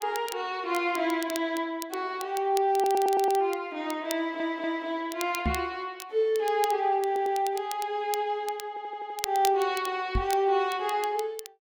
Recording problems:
crackle; vinyl, SNR 14 dB
stutter; 4 times, first at 2.5 s
knock on the microphone; at 5.5 s and at 10 s; peak +3 dB vs average level

